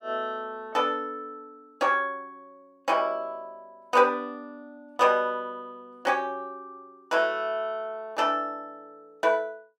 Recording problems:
none

